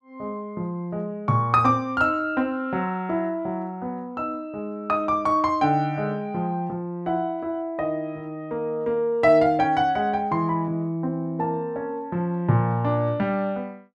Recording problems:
none

